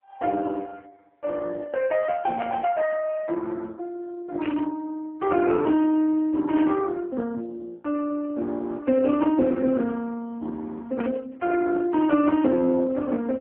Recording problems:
telephone audio; 190 Hz to 3.1 kHz, AMR-NB
burst of static; 4 times, first at 2.5 s; peak -3 dB vs average level

